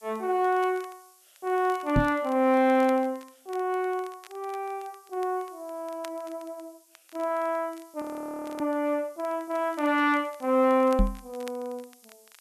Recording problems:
hiss; SNR 29 dB
crackling; vinyl, SNR 26 dB
knock on the microphone; at 2 s and at 11 s; peak +7 dB vs average level
audio freezing; at 8 s for 0.5 s

